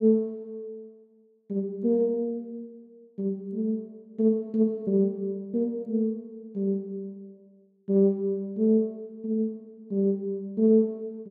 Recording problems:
none

